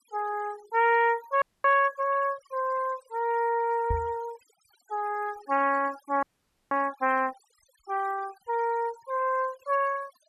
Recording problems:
noise reduction artefacts; signal-to-artefact ratio 22 dB
frozen audio; at 1.5 s and at 6 s
knock on the microphone; at 4 s; peak 0 dB vs average level

